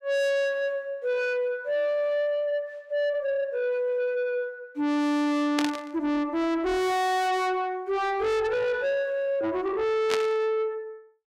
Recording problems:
distorted audio; soft clipping, signal-to-distortion ratio 6 dB
burst of static; at 5.5 s and at 10 s; peak +2 dB vs average level

